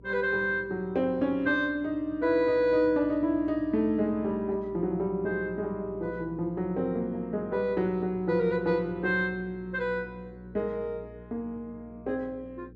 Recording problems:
hum; 60 Hz, harmonics up to 480 Hz, SNR 21 dB

